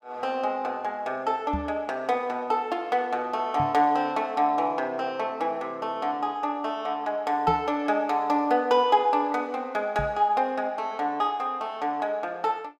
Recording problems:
knock on the microphone; 4 times, first at 1.5 s; peak -2 dB vs average level

